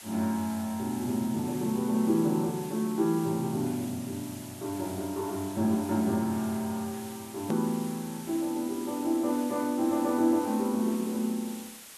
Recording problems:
background hiss; slope +1 dB per octave, SNR 15 dB
hard cut with a click; at 7.5 s

